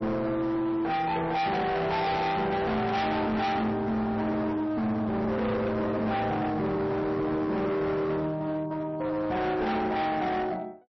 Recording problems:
lossy codec; MP3, log-spectral distance 2 dB, nothing above 5.8 kHz
distorted audio; hard clipping, signal-to-distortion ratio 7 dB

